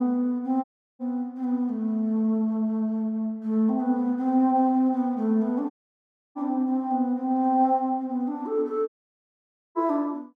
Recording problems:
dropout; at 0.5 s, at 5.5 s for 0.5 s and at 9 s for 1 s

